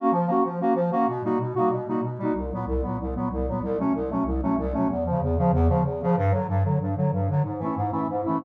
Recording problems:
none

